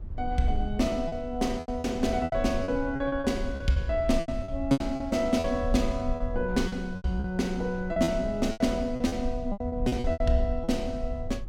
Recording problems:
low-frequency rumble; below 70 Hz, SNR 9 dB
packet loss; 13% of the sound replaced, filled with repeated pitch periods

